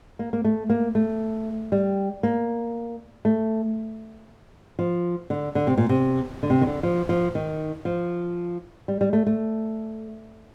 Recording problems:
wind on the microphone; below 730 Hz, SNR 22 dB

